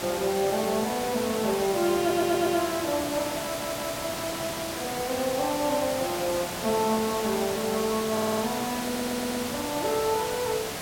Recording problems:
hiss; SNR 4 dB
stutter; 4 times, first at 2 s

